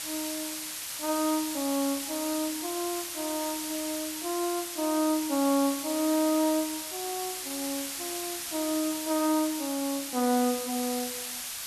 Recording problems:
hiss; slope +3 dB per octave, SNR 4 dB

